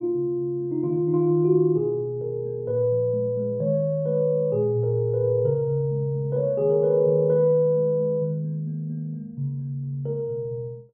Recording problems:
low-pass filter; nothing above 5.5 kHz

